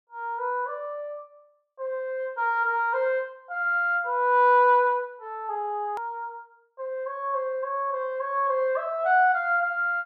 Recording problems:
edit click; at 6 s

